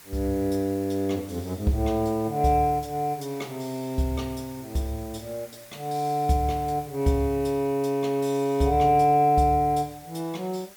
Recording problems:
hiss; slope -1 dB per octave, SNR 21 dB

